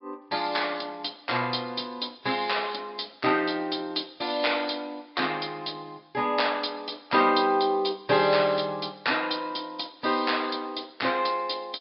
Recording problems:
treble missing; nothing above 4.9 kHz
lossy compression; MP3, log-spectral distance 5 dB

